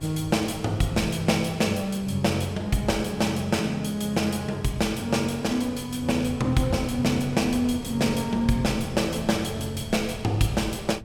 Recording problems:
wind on the microphone; below 190 Hz, SNR 18 dB

